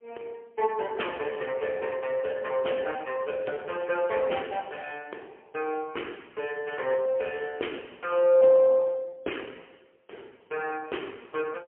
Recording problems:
phone line; 320 Hz to 3.2 kHz, AMR-NB, then MP3

